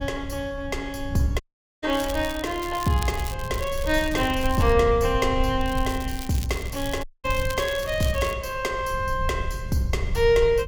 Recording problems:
low-frequency rumble; below 88 Hz, SNR 8 dB
audio cutting out; at 1.5 s and at 7 s
crackling; from 2 to 4.5 s and from 5.5 to 8.5 s; loose cable, SNR 14 dB

